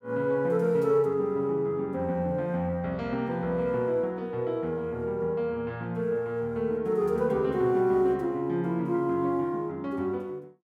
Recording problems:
none

